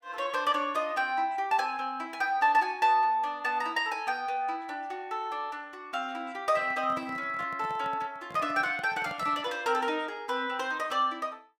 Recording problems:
handling noise; from 6.5 to 9.5 s; peak -11 dB vs average level

